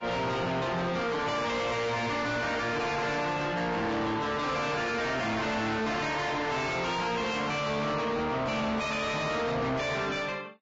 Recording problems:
lossy compression; Vorbis, log-spectral distance 4 dB, nothing above 7.3 kHz
distortion; soft clipping, signal-to-distortion ratio 6 dB

